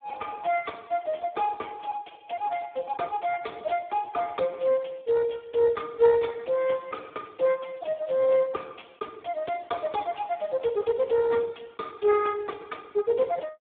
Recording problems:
telephone audio; 240 Hz to 2.2 kHz, Speex

